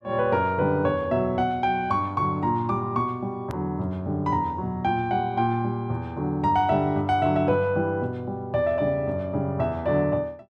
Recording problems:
click at an edit; at 3.5 s

